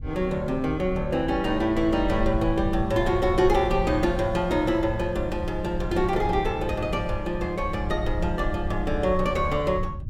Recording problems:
rumble; below 78 Hz, SNR 9 dB

